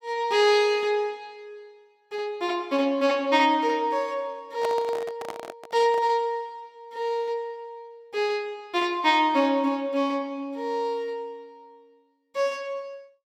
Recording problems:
microphone handling noise; from 4.5 to 6 s; peak -3 dB vs average level

